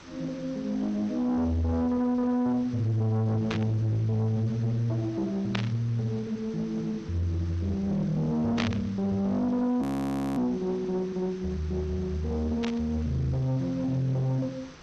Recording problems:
codec artefacts; MP2, then G.722, log-spectral distance 3 dB, nothing above 13.1 kHz
distorted audio; soft clipping, signal-to-distortion ratio 11 dB
background hiss; SNR 21 dB
static burst; 4 times, first at 3.5 s; peak 0 dB vs average level
frozen audio; at 10 s for 0.5 s

